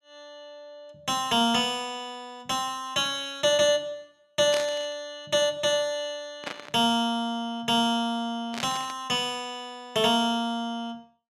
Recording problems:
burst of static; at 4.5 s, at 6.5 s and at 8.5 s; peak -2 dB vs average level

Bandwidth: 13.5 kHz